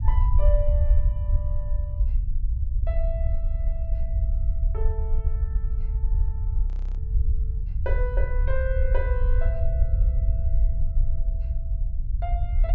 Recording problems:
treble cut off; nothing above 7.6 kHz
rumble; below 64 Hz, SNR -10 dB
frozen audio; at 6.5 s

